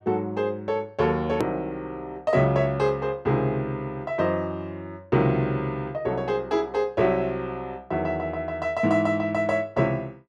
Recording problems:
hard cut with a click; at 1.5 s

